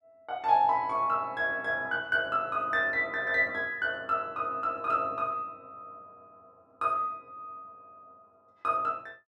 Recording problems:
none

